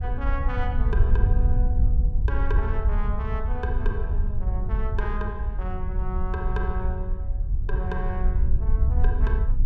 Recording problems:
wind noise; below 66 Hz, SNR -9 dB

